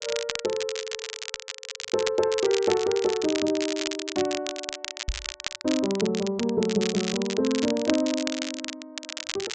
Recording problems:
low-pass filter; nothing above 8 kHz
crackling; vinyl, SNR 7 dB
knock on the microphone; at 5 s; peak -1 dB vs average level

